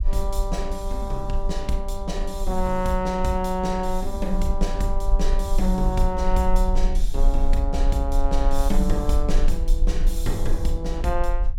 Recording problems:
rumble; below 38 Hz, strongest tone 20 Hz, SNR 0 dB

